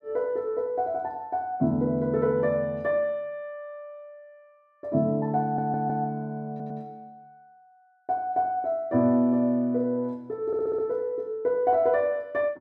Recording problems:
stutter; at 5.5 s, at 6.5 s and at 10 s

